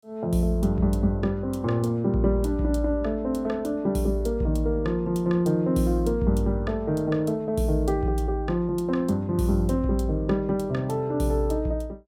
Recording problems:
none

